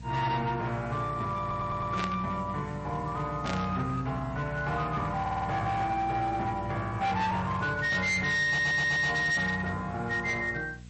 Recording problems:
lossy codec; MP3, log-spectral distance 3 dB, nothing above 8.2 kHz
distortion; hard clipping, signal-to-distortion ratio 11 dB
hum; 60 Hz, harmonics up to 480 Hz, SNR 15 dB
background hiss; SNR 29 dB
audio stuttering; at 1.5 s, at 5 s and at 8.5 s
static burst; at 2 s and at 3.5 s; peak -3 dB vs average level

